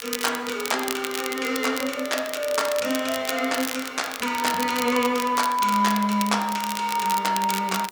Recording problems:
hiss; SNR 28 dB
crackle; vinyl, SNR 8 dB

